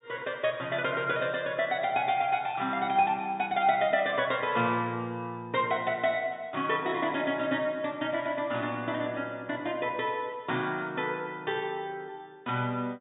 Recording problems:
treble cut off; nothing above 4 kHz

